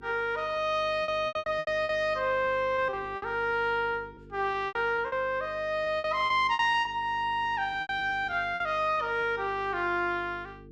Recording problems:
mains hum; 50 Hz, harmonics up to 450 Hz, SNR 22 dB
lost packets; 11% of the sound replaced, filled with repeated pitch periods

